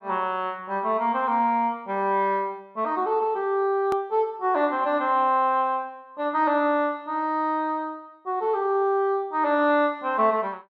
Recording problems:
click at an edit; at 4 s

